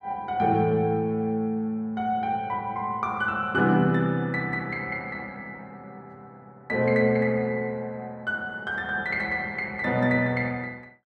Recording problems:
none

